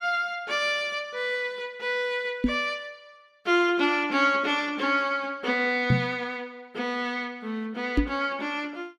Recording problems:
microphone bump; at 2.5 s, at 6 s and at 8 s; peak +8 dB vs average level

